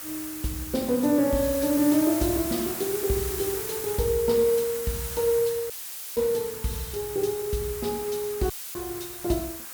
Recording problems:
background hiss; SNR 7 dB
dropout; at 5.5 s and at 8.5 s; filled with static

